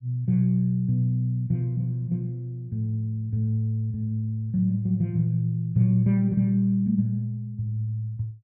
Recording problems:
none

